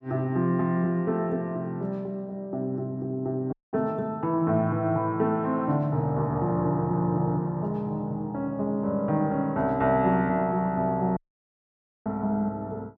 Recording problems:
dropout; at 3.5 s and at 11 s for 1 s

